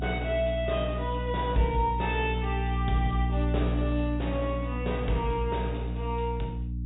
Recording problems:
low-pass filter; nothing above 4 kHz
electrical hum; 60 Hz, harmonics up to 300 Hz, SNR 1 dB

